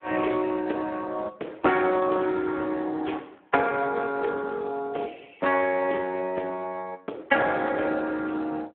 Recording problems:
phone line; 240 Hz to 3.3 kHz, Speex

